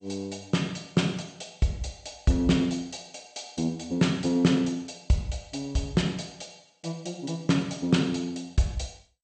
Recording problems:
lossy codec; MP2, log-spectral distance 5 dB, nothing above 8.5 kHz

